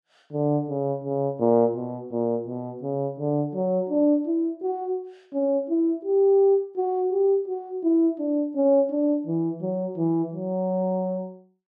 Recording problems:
none

